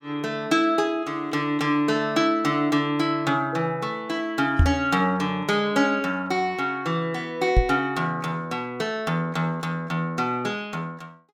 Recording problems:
microphone bump; at 4.5 s and at 7.5 s; peak +8 dB vs average level

